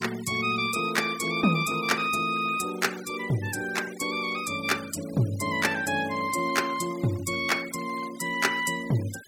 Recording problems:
denoising artefacts; signal-to-artefact ratio 17 dB

